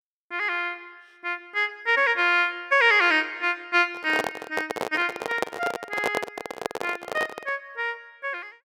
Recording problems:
microphone handling noise; from 4 to 7.5 s; peak +2 dB vs average level

